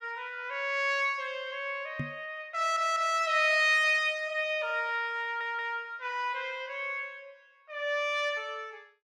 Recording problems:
microphone thump; at 2 s; peak -2 dB vs average level
stutter; at 2.5 s and at 5 s

